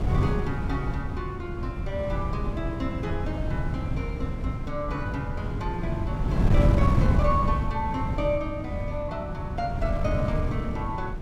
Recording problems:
wind on the microphone; below 160 Hz, SNR -3 dB

